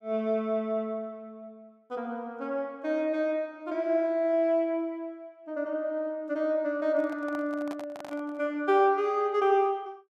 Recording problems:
microphone handling noise; from 7 to 8.5 s; peak -9 dB vs average level

